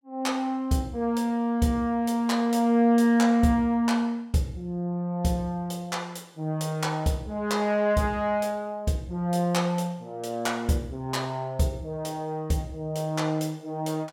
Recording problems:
none

